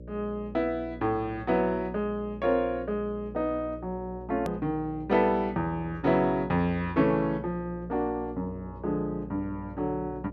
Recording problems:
electrical hum; 60 Hz, harmonics up to 600 Hz, SNR 15 dB
hard cut with a click; at 4.5 s

